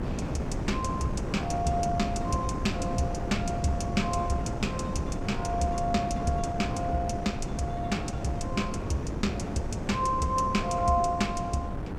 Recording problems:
wind on the microphone; below 350 Hz, SNR 3 dB

